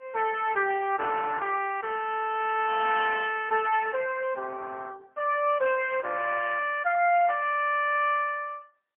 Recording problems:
telephone audio; 320 Hz to 3.5 kHz, AMR-NB, then MP3

